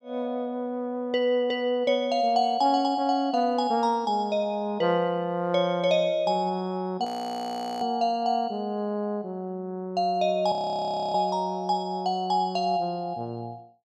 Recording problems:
audio freezing; at 7 s for 1 s and at 11 s for 0.5 s

